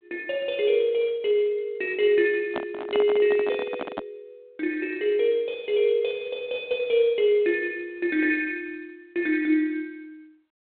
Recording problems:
telephone audio; 240 Hz to 3.9 kHz, G.726
microphone handling noise; from 2.5 to 4 s; peak -2 dB vs average level

